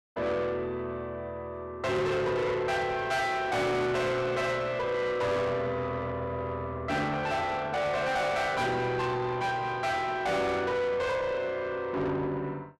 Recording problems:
distortion; soft clipping, signal-to-distortion ratio 7 dB

